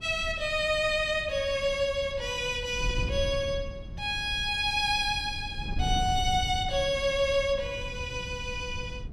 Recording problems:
wind noise; below 110 Hz, SNR 10 dB

